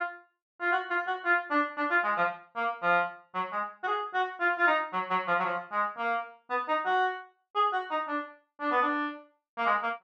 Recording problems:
none

